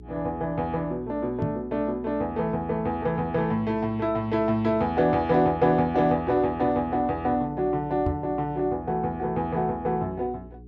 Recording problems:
electrical hum; 60 Hz, harmonics up to 420 Hz, SNR 20 dB
knock on the microphone; at 1.5 s and at 8 s; peak 0 dB vs average level

